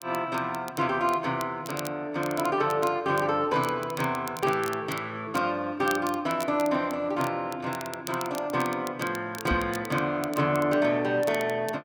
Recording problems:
crackling; vinyl, SNR 17 dB
knock on the microphone; at 9.5 s; peak +1 dB vs average level

